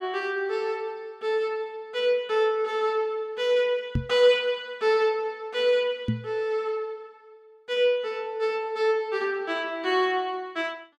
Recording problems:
microphone bump; at 4 s and at 6 s; peak +4 dB vs average level

